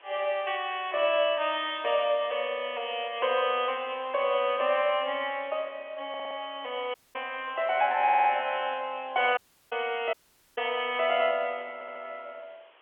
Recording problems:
phone line; 320 Hz to 3.4 kHz, G.711
hiss; SNR 27 dB
stutter; at 6 s, at 8 s and at 12 s
audio cutting out; at 7 s, at 9.5 s and at 10 s

